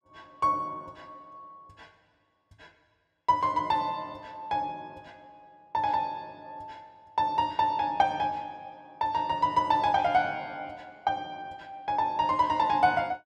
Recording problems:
none

